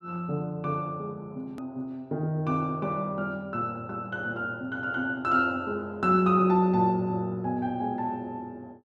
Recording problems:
click at an edit; at 1.5 s

